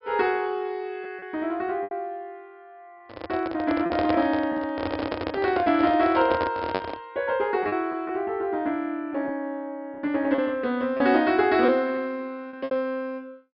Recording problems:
treble cut off; nothing above 5.2 kHz
lost packets; 5% of the sound replaced, filled with repeated pitch periods
microphone handling noise; from 3 to 7 s; peak +2 dB vs average level

